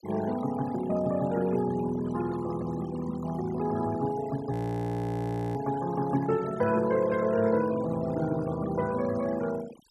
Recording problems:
noise reduction artefacts; signal-to-artefact ratio 15 dB
audio freezing; at 4.5 s for 1 s

